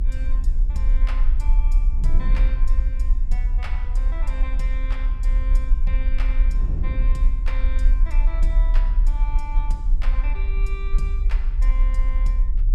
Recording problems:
rumble; below 40 Hz, strongest tone 32 Hz, SNR -15 dB
wind noise; below 140 Hz, SNR 1 dB

